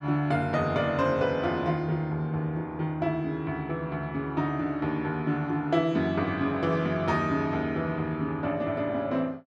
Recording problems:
none

